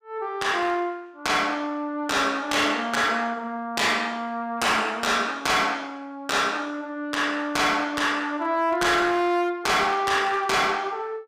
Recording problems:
distorted audio; hard clipping, uneven, signal-to-distortion ratio 12 dB

